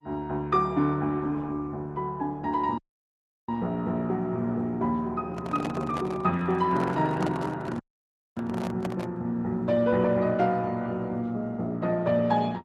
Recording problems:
codec artefacts; Opus, log-spectral distance 2 dB
audio cutting out; at 3 s for 0.5 s and at 8 s for 0.5 s
microphone handling noise; from 5.5 to 9 s; peak -4 dB vs average level

